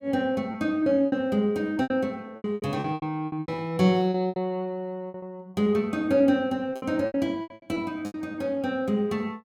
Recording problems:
lost packets; 15% of the sound replaced, filled with repeated pitch periods

